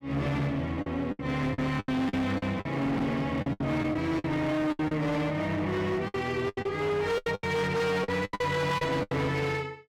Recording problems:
distortion; hard clipping, uneven, signal-to-distortion ratio 7 dB
lost packets; 13% of the sound replaced, filled with the last packet

